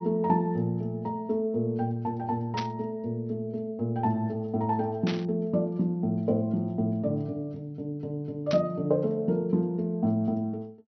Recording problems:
treble cut off; nothing above 6 kHz
static burst; at 2.5 s, at 5 s and at 8.5 s; peak -2 dB vs average level

